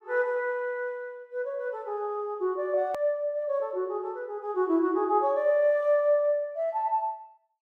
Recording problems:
hard cut with a click; at 3 s

